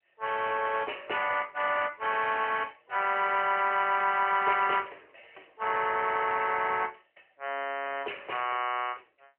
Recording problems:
phone line; 300 Hz to 3.1 kHz, AMR-NB

